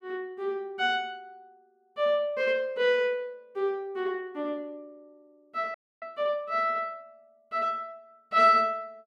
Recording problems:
frozen audio; at 5.5 s

